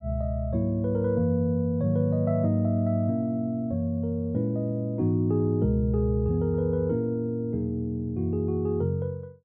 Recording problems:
none

